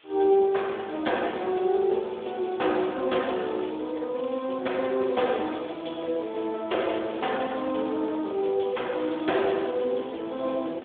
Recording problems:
phone line; 260 Hz to 3.5 kHz, Speex
hiss; SNR 27 dB

